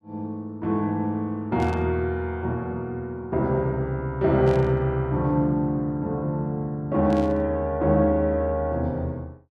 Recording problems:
static burst; at 1.5 s, at 4.5 s and at 7 s; peak -14 dB vs average level

